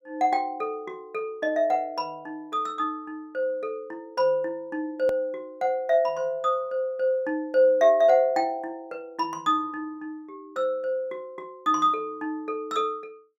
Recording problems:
edit click; at 5 s

